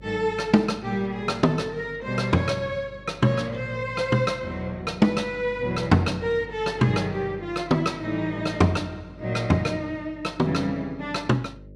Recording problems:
hum; 50 Hz, harmonics up to 600 Hz, SNR 22 dB

